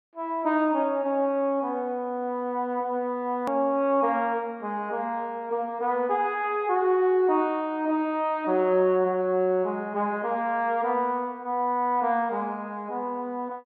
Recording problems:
treble missing; nothing above 5.5 kHz
click at an edit; at 3.5 s

